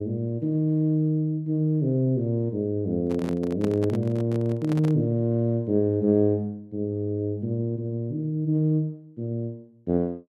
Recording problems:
microphone handling noise; from 3 to 5 s; peak -3 dB vs average level

